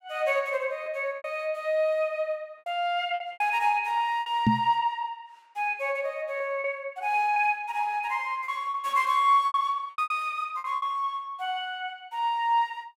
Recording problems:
packet loss; 7% of the sound replaced, filled with repeated pitch periods
microphone thump; at 4.5 s; peak +8 dB vs average level

